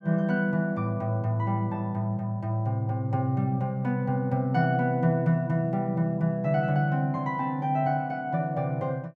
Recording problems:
none

